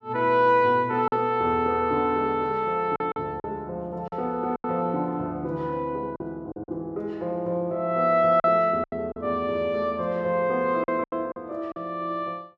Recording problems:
lost packets; 6% of the sound replaced, filled with silence

